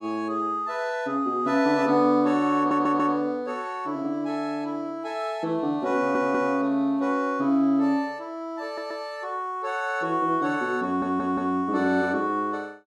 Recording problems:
audio stuttering; 4 times, first at 2.5 s

